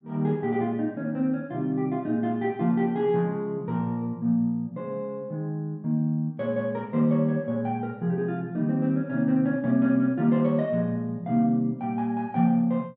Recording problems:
none

